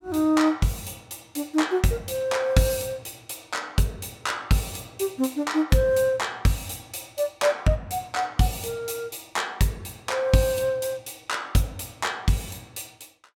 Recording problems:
none

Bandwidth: 17 kHz